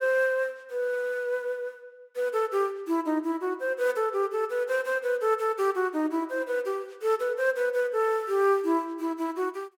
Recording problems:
none

